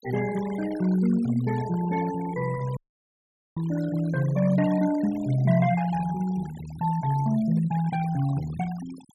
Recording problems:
denoising artefacts; signal-to-artefact ratio 18 dB
dropout; at 3 s for 1 s

